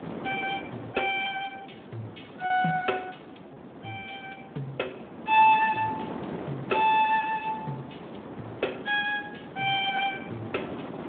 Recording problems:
telephone audio; 170 Hz to 3.6 kHz, Speex
wind noise; below 730 Hz, SNR 13 dB
packet loss; 0.6% of the sound replaced, filled with repeated pitch periods

